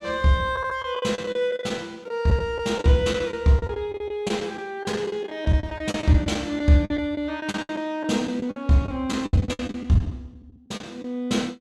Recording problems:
packet loss; 14% of the sound replaced, filled with the last packet

